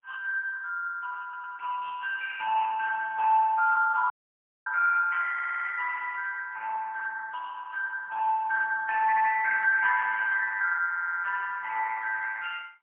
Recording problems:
phone line; 990 Hz to 2 kHz, AMR-NB, then MP3
stutter; 4 times, first at 1 s
dropout; at 4 s for 0.5 s

